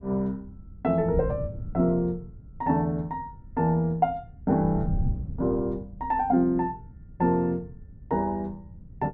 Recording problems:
wind on the microphone; below 140 Hz, SNR 12 dB

